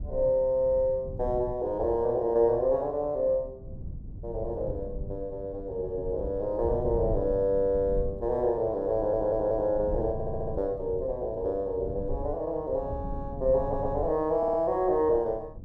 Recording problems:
rumble; below 120 Hz, SNR 12 dB
audio stuttering; 4 times, first at 9 s

